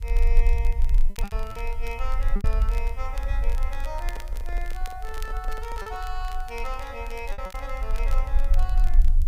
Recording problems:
background hiss; slope 0 dB per octave, SNR 24 dB
rumble; below 42 Hz, strongest tone 20 Hz, SNR -8 dB
crackling; vinyl, SNR 12 dB
lost packets; 5% of the sound replaced, filled with repeated pitch periods
microphone handling noise; from 4 to 6 s; peak -2 dB vs average level

